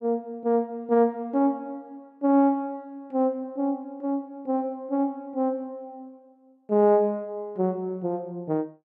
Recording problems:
none

